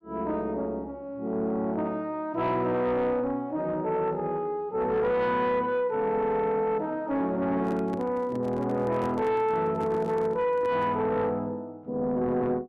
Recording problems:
distorted audio; soft clipping, signal-to-distortion ratio 12 dB
microphone handling noise; from 7.5 to 11 s; peak -6 dB vs average level

